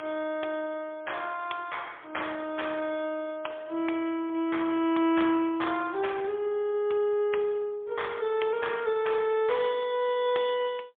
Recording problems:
phone line; 260 Hz to 3.5 kHz, AMR-NB, then MP3

